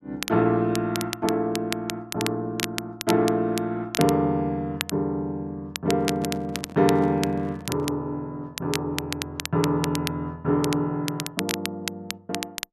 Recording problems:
crackling; vinyl, SNR 8 dB
handling noise; from 6 to 8 s; peak -7 dB vs average level

